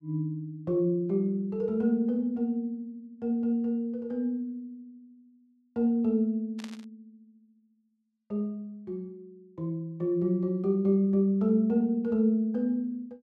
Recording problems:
burst of static; at 6.5 s; peak -11 dB vs average level

